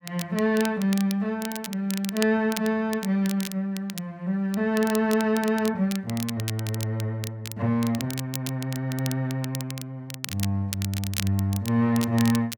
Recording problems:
crackling; vinyl, SNR 11 dB

